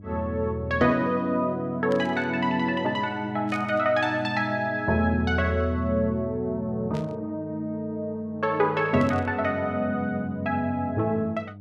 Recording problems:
mains hum; 50 Hz, harmonics up to 600 Hz, SNR 19 dB
static burst; 4 times, first at 2 s; peak -11 dB vs average level

